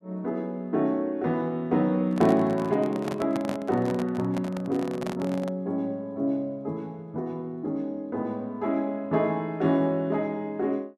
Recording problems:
microphone handling noise; from 2 to 5.5 s; peak -1 dB vs average level

